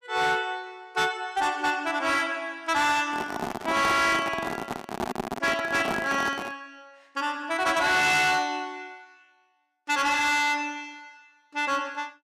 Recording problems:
distortion; hard clipping, signal-to-distortion ratio 10 dB
microphone handling noise; from 3 to 6.5 s; peak 0 dB vs average level

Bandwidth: 15 kHz